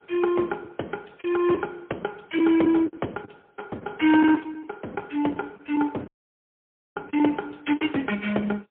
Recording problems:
telephone audio; 170 Hz to 3.4 kHz, AMR-NB, then MP3
lost packets; 8% of the sound replaced, filled with the last packet
audio cutting out; at 6 s for 1 s

